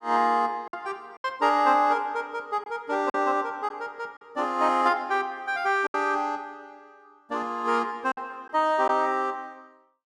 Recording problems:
lost packets; 4% of the sound replaced, filled with silence

